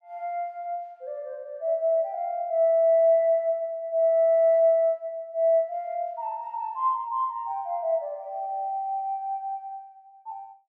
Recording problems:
none

